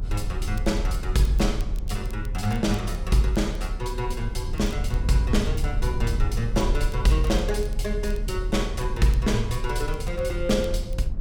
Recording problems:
rumble; below 62 Hz, strongest tone 38 Hz, SNR 3 dB
crackle; vinyl, SNR 25 dB

